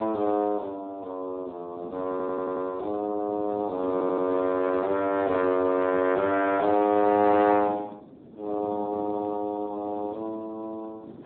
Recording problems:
telephone audio; 240 Hz to 2.5 kHz, Speex
wind noise; below 430 Hz, SNR 19 dB
stutter; at 2 s and at 4 s

